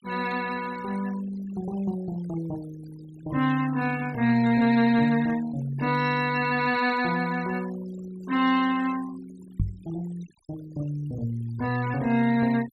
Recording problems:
denoising artefacts; signal-to-artefact ratio 18 dB
microphone bump; at 9.5 s; peak +3 dB vs average level

